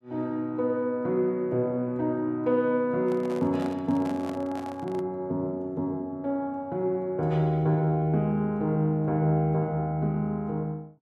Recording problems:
handling noise; from 3 to 5 s; peak -8 dB vs average level

